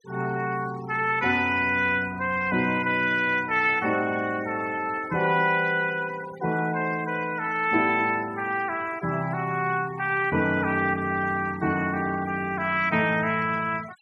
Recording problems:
denoising artefacts; signal-to-artefact ratio 20 dB

